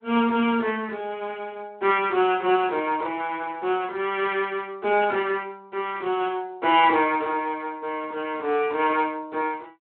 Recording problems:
phone line; 260 Hz to 3.5 kHz, Speex
crackling; at 6 s; loose cable, SNR 28 dB

